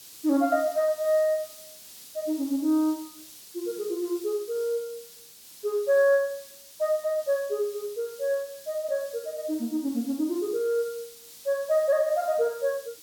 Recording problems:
background hiss; SNR 18 dB

